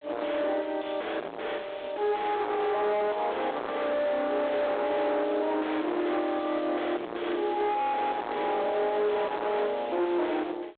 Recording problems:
telephone audio; 320 Hz to 3.6 kHz, G.726
distortion; soft clipping, signal-to-distortion ratio 5 dB

